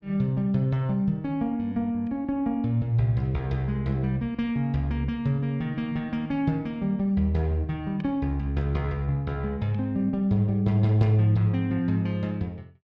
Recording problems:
none

